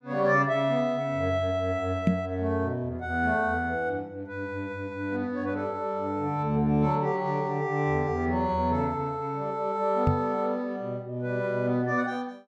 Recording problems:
knock on the microphone; at 2 s and at 10 s; peak +7 dB vs average level

